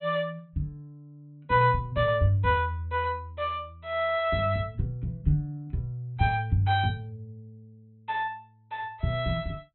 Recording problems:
low-pass filter; nothing above 4.1 kHz

